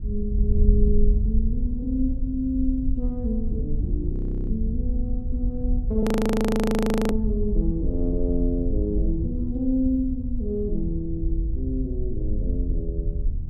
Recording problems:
wind noise; below 64 Hz, SNR 0 dB
audio freezing; at 4 s and at 6 s for 1 s

